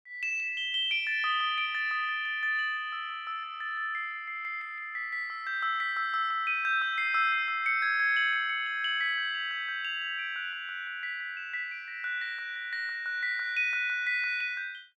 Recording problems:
none

